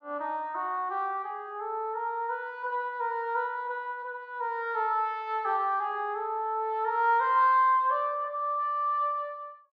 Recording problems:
low-pass filter; nothing above 8 kHz

